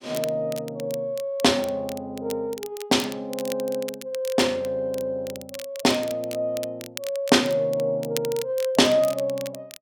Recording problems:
crackle; vinyl, SNR 15 dB

